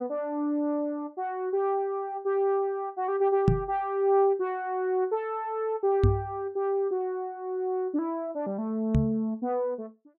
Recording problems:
microphone bump; at 3.5 s, at 6 s and at 9 s; peak +9 dB vs average level

